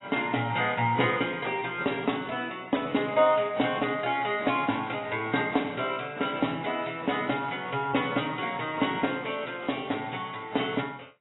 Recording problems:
codec artefacts; AAC, log-spectral distance 8 dB, nothing above 3.8 kHz

